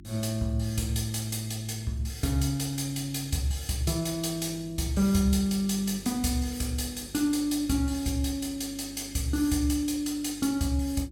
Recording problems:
mains hum; 50 Hz, harmonics up to 350 Hz, SNR 20 dB

